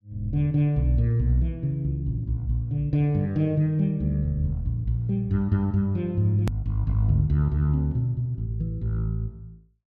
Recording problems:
click at an edit; at 6.5 s

